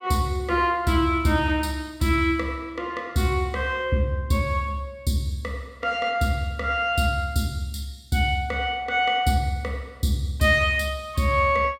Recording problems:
none

